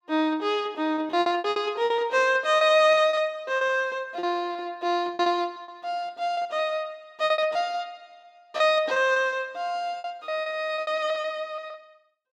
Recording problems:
packet loss; 14% of the sound replaced, filled with repeated pitch periods

